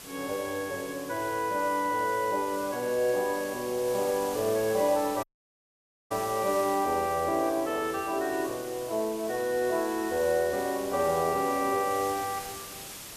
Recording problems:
hiss; slope -1 dB per octave, SNR 13 dB
audio cutting out; at 5 s for 1 s

